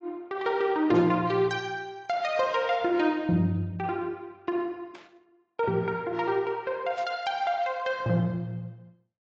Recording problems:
lossy compression; AAC, log-spectral distance 2 dB
burst of static; at 1 s, at 5 s and at 7 s; peak -15 dB vs average level

